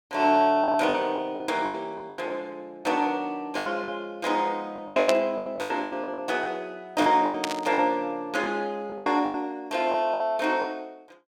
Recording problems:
lost packets; 14% of the sound replaced, filled with the last packet
static burst; at 5 s and at 7.5 s; peak +3 dB vs average level

